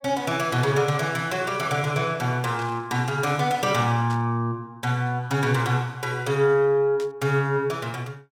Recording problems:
static burst; at 2.5 s, at 4 s and at 7 s; peak -12 dB vs average level

